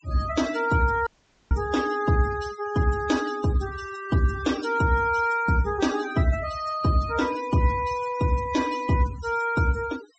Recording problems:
treble cut off; nothing above 8 kHz
noise reduction artefacts; signal-to-artefact ratio 15 dB
dropout; at 1 s

